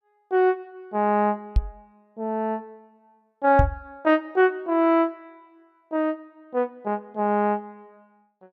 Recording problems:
knock on the microphone; at 1.5 s and at 3.5 s; peak +7 dB vs average level

